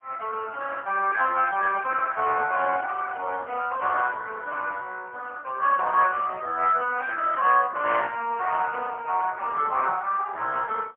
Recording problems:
telephone audio; 340 Hz to 3.2 kHz, AMR-NB, then MP3

